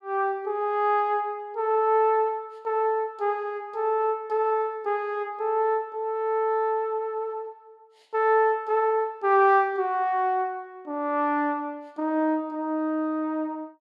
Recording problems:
none

